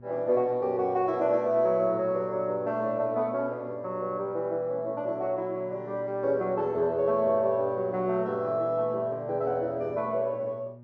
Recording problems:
mains hum; 60 Hz, harmonics up to 600 Hz, SNR 19 dB

